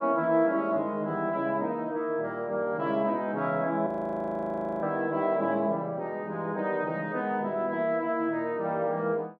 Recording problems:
frozen audio; at 4 s for 1 s

